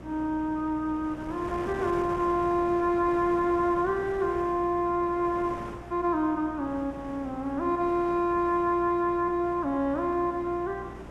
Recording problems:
hum; 60 Hz, harmonics up to 360 Hz, SNR 20 dB
wind noise; below 1 kHz, SNR 15 dB

